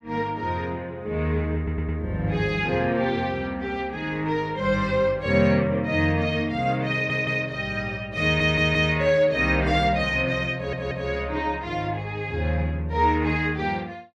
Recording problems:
stutter; 4 times, first at 1.5 s

